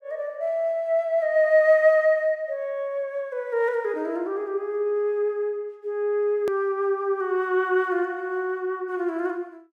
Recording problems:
edit click; at 6.5 s

